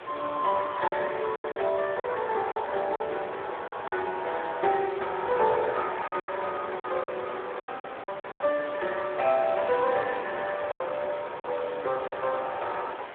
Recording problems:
telephone audio; 300 Hz to 3.6 kHz, Speex
background hiss; SNR 12 dB
lost packets; 8% of the sound replaced, filled with silence

